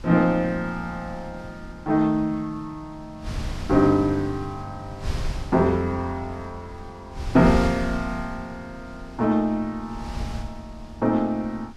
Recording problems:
wind noise; below 130 Hz, SNR 12 dB

